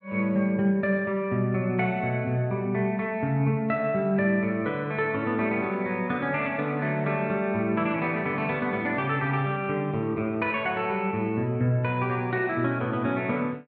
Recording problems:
none

